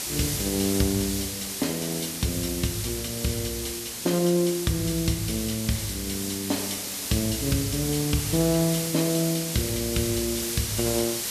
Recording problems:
background hiss; SNR 3 dB

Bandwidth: 14 kHz